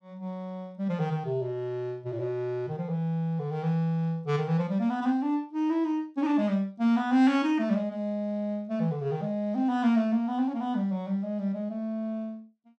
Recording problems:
none

